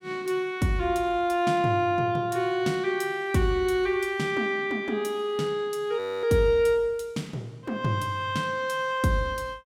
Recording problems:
frozen audio; at 6 s

